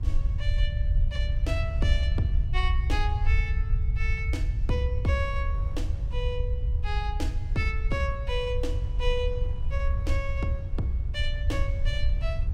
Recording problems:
low-frequency rumble; below 76 Hz, SNR -4 dB
wind noise; below 430 Hz, SNR 20 dB

